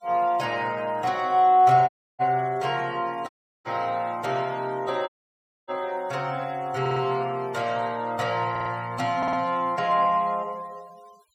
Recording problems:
noise reduction artefacts; signal-to-artefact ratio 25 dB
audio cutting out; at 2 s, at 3.5 s and at 5 s for 0.5 s
stutter; at 7 s, at 8.5 s and at 9 s

